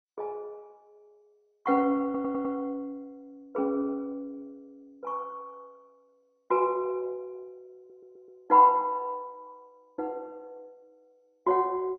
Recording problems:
lossy compression; MP2, log-spectral distance 2 dB
stutter; at 2 s and at 8 s

